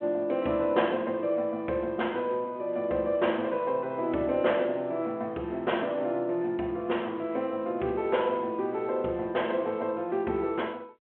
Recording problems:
telephone audio; 240 Hz to 3.3 kHz, G.726

